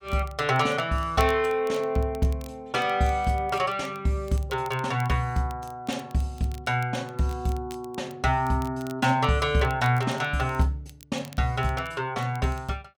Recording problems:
crackle; vinyl, SNR 24 dB

